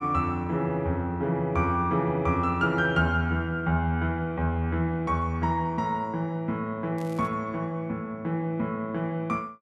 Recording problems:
crackle; at 7 s; loose cable, SNR 27 dB

